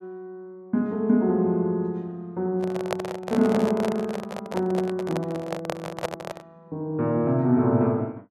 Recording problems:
handling noise; from 2.5 to 6.5 s; peak +2 dB vs average level

